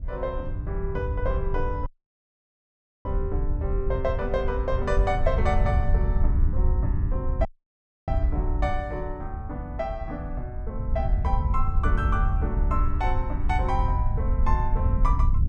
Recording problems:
wind on the microphone; below 76 Hz, SNR -3 dB
audio cutting out; at 2 s for 1 s and at 7.5 s for 0.5 s

